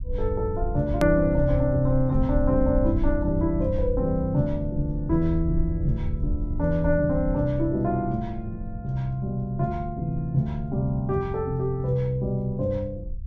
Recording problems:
rumble; below 76 Hz, SNR 7 dB
edit click; at 1 s

